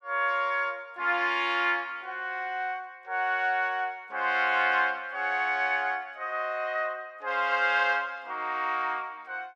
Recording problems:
none

